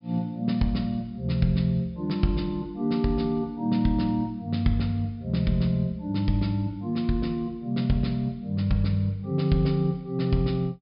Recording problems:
low-pass filter; nothing above 5.5 kHz

